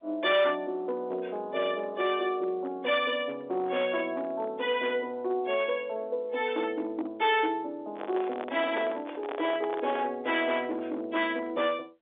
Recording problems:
phone line; 280 Hz to 3.6 kHz, G.711
distortion; hard clipping, signal-to-distortion ratio 13 dB
microphone handling noise; from 8 to 10 s; peak -1 dB vs average level

